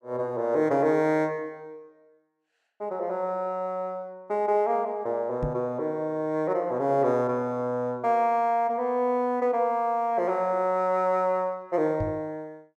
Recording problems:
knock on the microphone; at 5.5 s and at 12 s; peak -1 dB vs average level

